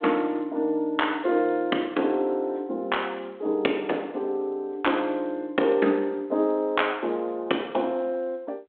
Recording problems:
telephone audio; 240 Hz to 3.6 kHz, G.726

